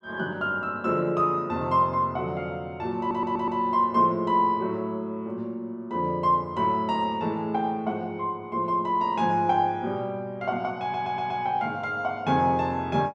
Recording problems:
audio stuttering; at 3 s and at 11 s

